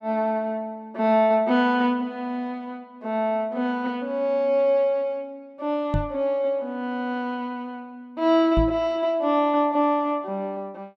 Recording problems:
microphone bump; at 6 s and at 8.5 s; peak +2 dB vs average level

